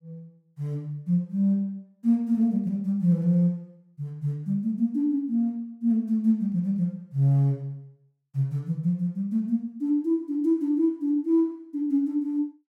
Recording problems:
none

